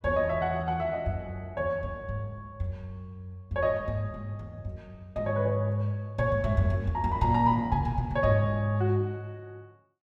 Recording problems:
none

